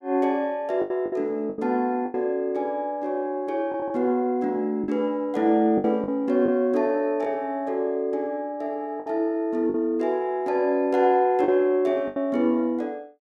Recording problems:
packet loss; 6% of the sound replaced, filled with the last packet

